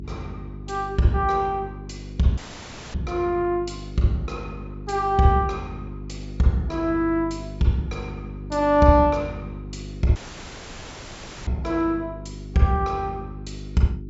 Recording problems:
treble missing; nothing above 8 kHz
mains hum; 50 Hz, harmonics up to 400 Hz, SNR 13 dB
audio cutting out; at 2.5 s for 0.5 s and at 10 s for 1.5 s

